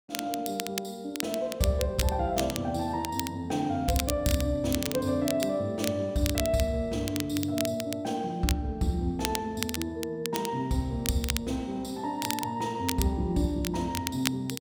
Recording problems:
crackling; vinyl, SNR 6 dB

